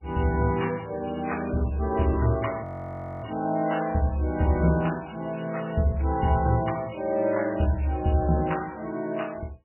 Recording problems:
lossy compression; MP3, log-spectral distance 8 dB, nothing above 2.9 kHz
audio freezing; at 2.5 s for 0.5 s

